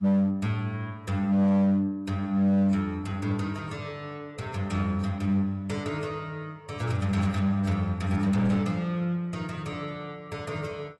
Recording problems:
lossy compression; AAC, log-spectral distance 2 dB
distorted audio; hard clipping, signal-to-distortion ratio 11 dB

